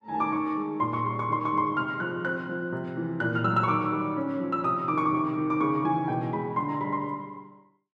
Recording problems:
none

